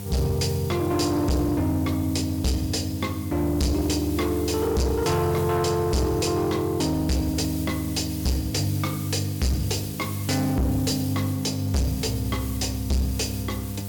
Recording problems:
distortion; hard clipping, signal-to-distortion ratio 6 dB
electrical hum; 50 Hz, harmonics up to 900 Hz, SNR 11 dB
background hiss; SNR 14 dB

